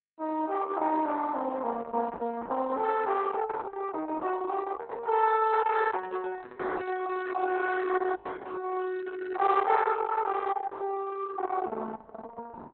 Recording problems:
lossy compression; Opus, log-spectral distance 4 dB, nothing above 4 kHz

